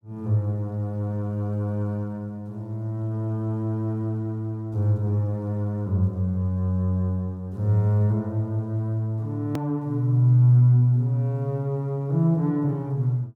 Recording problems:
hard cut with a click; at 9.5 s

